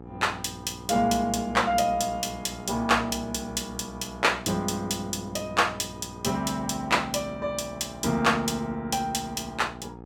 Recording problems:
hum; 60 Hz, harmonics up to 1.3 kHz, SNR 16 dB

